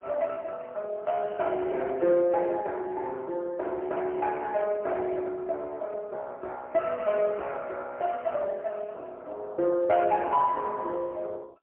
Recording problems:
telephone audio; 300 Hz to 3.4 kHz, AMR-NB, then MP3

